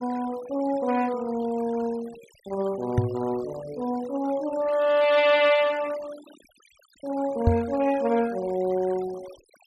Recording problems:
denoising artefacts; signal-to-artefact ratio 20 dB
microphone bump; at 3 s and at 7.5 s; peak +7 dB vs average level

